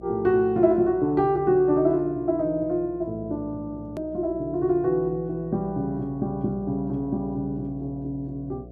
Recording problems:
hum; 60 Hz, harmonics up to 720 Hz, SNR 18 dB
edit click; at 4 s

